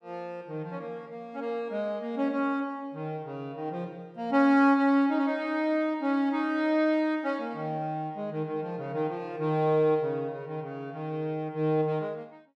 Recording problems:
none

